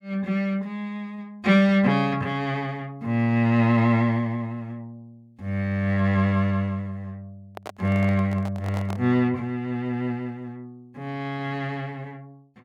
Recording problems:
microphone handling noise; from 7.5 to 9 s; peak -7 dB vs average level

